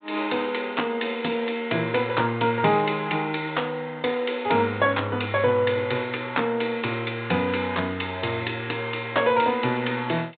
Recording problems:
treble cut off; nothing above 4 kHz

